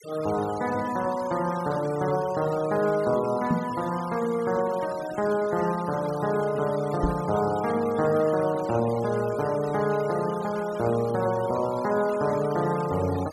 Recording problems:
noise reduction artefacts; signal-to-artefact ratio 17 dB
microphone thump; at 3.5 s and at 7 s; peak +4 dB vs average level

